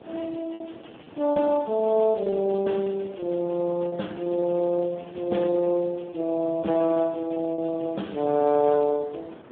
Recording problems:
phone line; 110 Hz to 3.4 kHz, Speex
wind noise; below 740 Hz, SNR 21 dB
lost packets; 7% of the sound replaced, filled with repeated pitch periods

